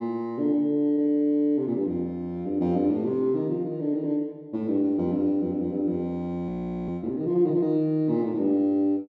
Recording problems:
audio freezing; at 6.5 s

